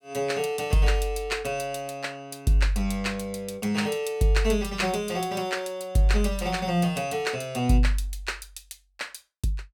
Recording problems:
none

